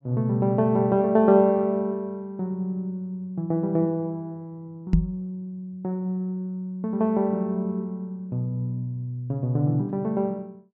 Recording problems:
treble missing; nothing above 8 kHz
knock on the microphone; at 5 s; peak +8 dB vs average level

